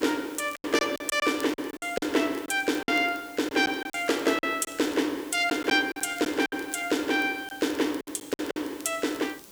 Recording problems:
background hiss; SNR 21 dB
crackling; vinyl, SNR 26 dB
packet loss; 9% of the sound replaced, filled with silence

